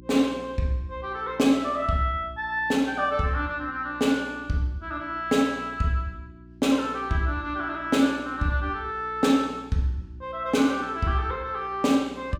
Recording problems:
hum; 60 Hz, harmonics up to 360 Hz, SNR 23 dB

